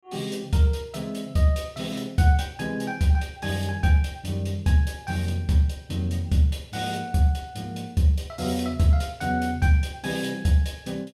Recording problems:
none

